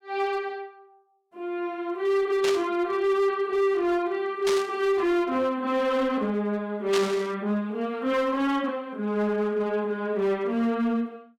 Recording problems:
distorted audio; hard clipping, signal-to-distortion ratio 11 dB
burst of static; at 2.5 s, at 4.5 s and at 7 s; peak 0 dB vs average level

